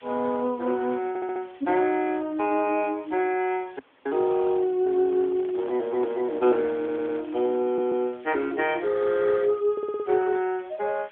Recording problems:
phone line; 220 Hz to 3.7 kHz, AMR-NB
hiss; SNR 27 dB
audio stuttering; 4 times, first at 1 s
dropout; at 4 s
microphone handling noise; from 4.5 to 8 s; peak -12 dB vs average level

